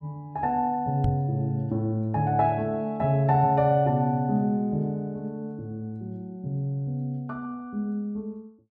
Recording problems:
knock on the microphone; at 1 s; peak +5 dB vs average level

